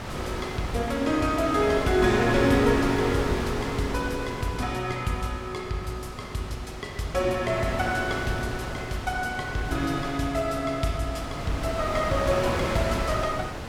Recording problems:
wind on the microphone; below 1.4 kHz, SNR 6 dB

